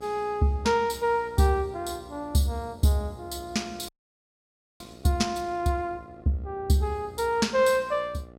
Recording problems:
electrical hum; 60 Hz, harmonics up to 1.5 kHz, SNR 22 dB
audio freezing; at 4 s for 1 s

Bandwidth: 16 kHz